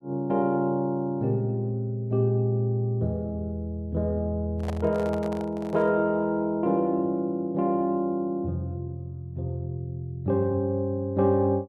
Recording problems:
microphone handling noise; from 4.5 to 6 s; peak -5 dB vs average level

